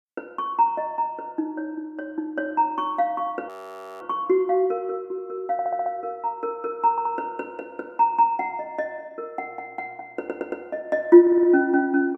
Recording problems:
frozen audio; at 3.5 s for 0.5 s
stutter; 4 times, first at 5.5 s

